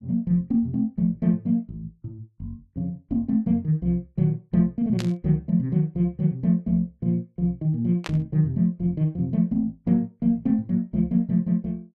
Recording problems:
static burst; at 5 s and at 8 s; peak -5 dB vs average level

